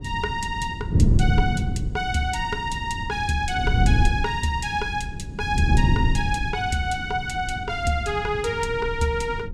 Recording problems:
wind noise; below 150 Hz, SNR 1 dB

